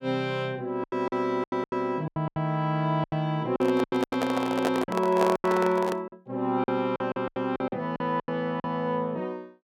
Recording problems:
packet loss; 14% of the sound replaced, filled with silence
microphone handling noise; from 3.5 to 6 s; peak +3 dB vs average level

